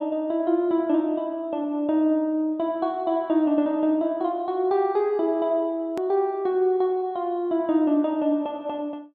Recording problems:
edit click; at 6 s

